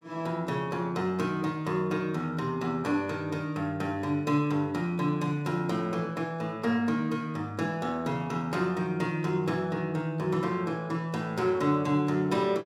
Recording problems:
none

